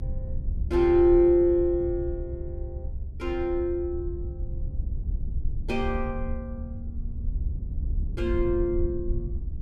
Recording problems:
low-frequency rumble; below 72 Hz, SNR 8 dB

